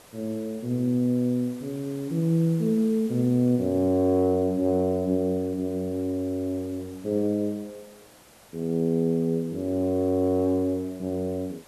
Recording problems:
background hiss; slope -4 dB per octave, SNR 25 dB

